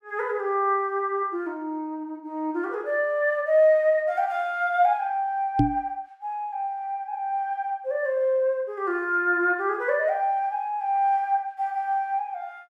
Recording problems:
microphone bump; at 5.5 s; peak +7 dB vs average level

